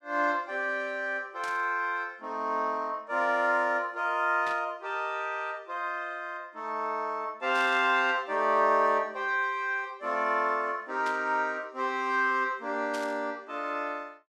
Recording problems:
burst of static; 5 times, first at 1.5 s; peak -9 dB vs average level

